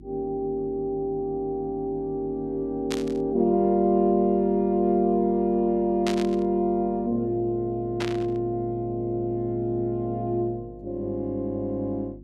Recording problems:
mains hum; 50 Hz, harmonics up to 350 Hz, SNR 20 dB
static burst; at 3 s, at 6 s and at 8 s; peak -2 dB vs average level

